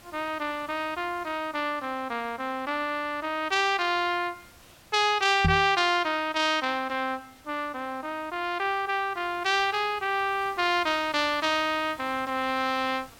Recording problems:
background hiss; slope -2 dB per octave, SNR 25 dB
microphone thump; at 5.5 s; peak +5 dB vs average level

